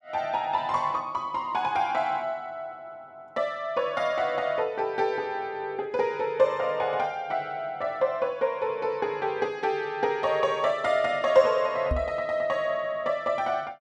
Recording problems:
microphone bump; at 12 s; peak +2 dB vs average level

